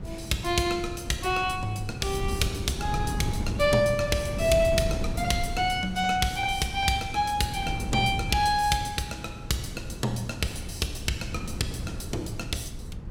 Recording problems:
wind noise; below 180 Hz, SNR 8 dB

